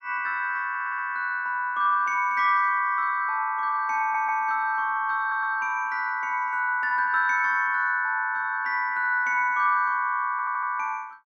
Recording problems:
stutter; 4 times, first at 0.5 s

